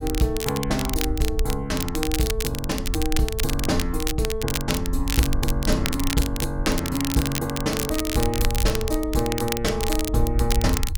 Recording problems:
low-frequency rumble; below 62 Hz, SNR 5 dB
crackle; vinyl, SNR 5 dB

